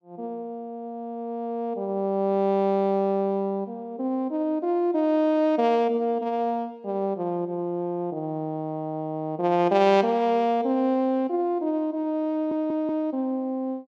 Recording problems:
audio stuttering; at 12 s

